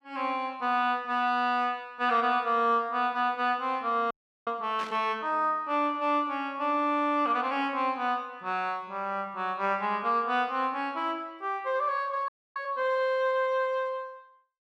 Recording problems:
audio freezing; at 4 s and at 12 s
burst of static; at 5 s; peak -9 dB vs average level

